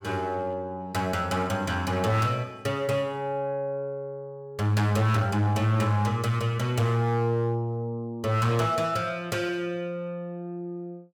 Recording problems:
distortion; hard clipping, uneven, signal-to-distortion ratio 10 dB

